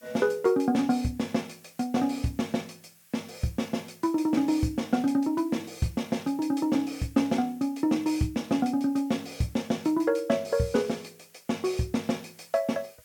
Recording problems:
hiss; slope +2 dB per octave, SNR 27 dB

